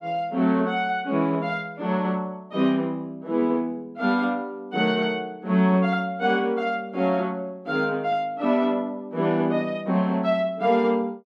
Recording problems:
none

